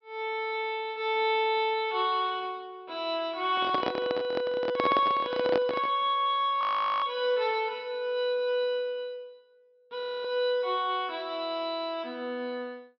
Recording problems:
treble missing; nothing above 5.5 kHz
handling noise; from 3.5 to 6 s; peak +3 dB vs average level
frozen audio; at 6.5 s and at 10 s

